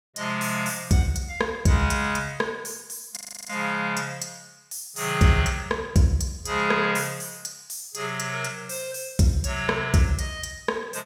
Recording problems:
audio freezing; at 3 s

